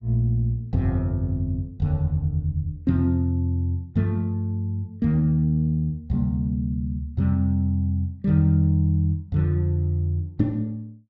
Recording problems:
low-pass filter; nothing above 8 kHz

